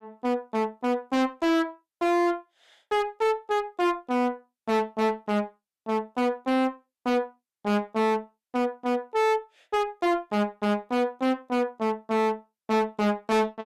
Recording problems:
distortion; hard clipping, uneven, signal-to-distortion ratio 6 dB

